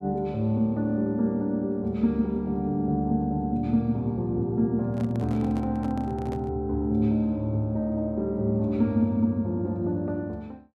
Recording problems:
microphone handling noise; from 5 to 6.5 s; peak -9 dB vs average level

